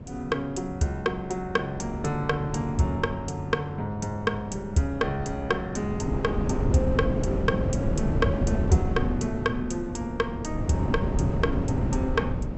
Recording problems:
low-pass filter; nothing above 7.9 kHz
wind on the microphone; below 250 Hz, SNR 1 dB

